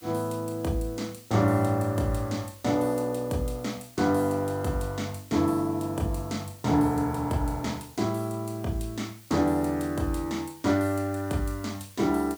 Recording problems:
hiss; slope +1 dB per octave, SNR 22 dB

